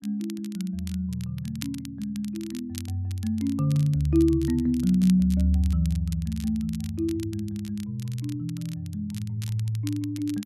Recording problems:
crackle; vinyl, SNR 19 dB

